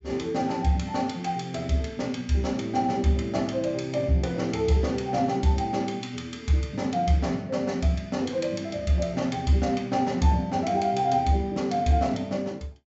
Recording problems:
low-pass filter; nothing above 7.5 kHz

